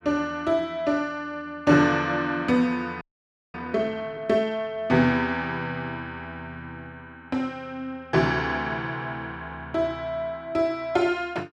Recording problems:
audio freezing; at 3 s for 0.5 s

